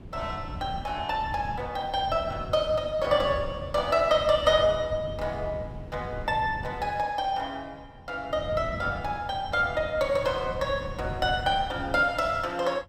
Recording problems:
wind noise; below 180 Hz, SNR 12 dB

